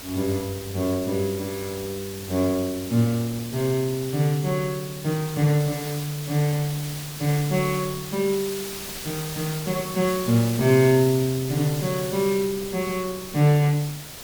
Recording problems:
hiss; slope 0 dB per octave, SNR 11 dB
wind on the microphone; below 560 Hz, SNR 24 dB

